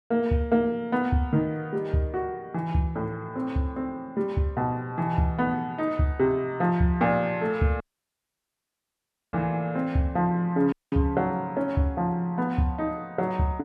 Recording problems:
audio cutting out; at 8 s for 1.5 s and at 11 s

